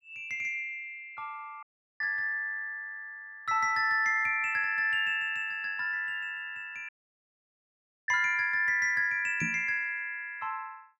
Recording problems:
audio cutting out; at 1.5 s and at 7 s for 1 s
knock on the microphone; at 9.5 s; peak -3 dB vs average level

